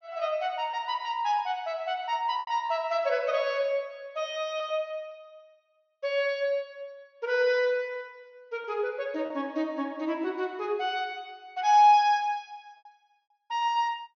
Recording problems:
low-pass filter; nothing above 6.5 kHz
lost packets; 3% of the sound replaced, filled with repeated pitch periods

